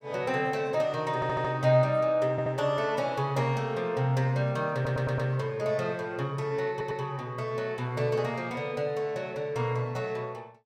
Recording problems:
stutter; 4 times, first at 1 s

